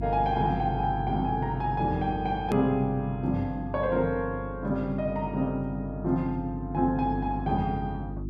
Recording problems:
hum; 50 Hz, harmonics up to 350 Hz, SNR 9 dB
hard cut with a click; at 2.5 s

